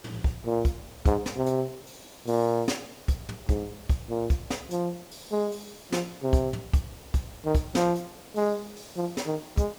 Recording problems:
background hiss; SNR 19 dB

